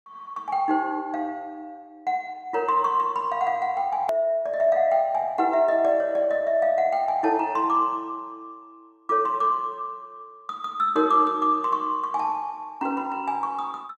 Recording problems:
click at an edit; at 4 s

